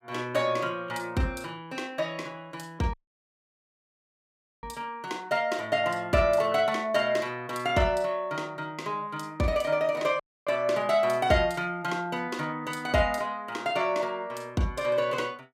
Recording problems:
audio cutting out; at 3 s for 1.5 s and at 10 s

